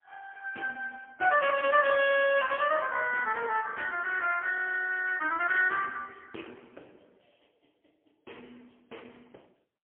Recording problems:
telephone audio; 260 Hz to 3.3 kHz, AMR-NB, then MP3

